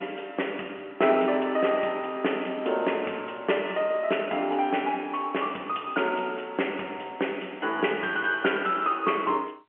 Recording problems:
telephone audio; 280 Hz to 3.2 kHz, G.711

